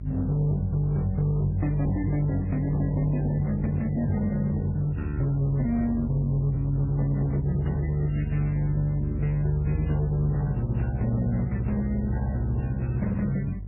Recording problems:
codec artefacts; MP3, then AAC, log-spectral distance 2 dB
distortion; hard clipping, uneven, signal-to-distortion ratio 11 dB
hum; 50 Hz, harmonics up to 400 Hz, SNR 8 dB

